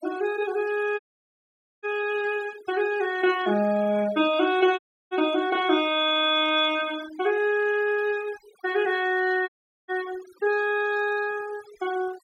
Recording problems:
denoising artefacts; signal-to-artefact ratio 18 dB
audio cutting out; at 1 s for 1 s, at 5 s and at 9.5 s

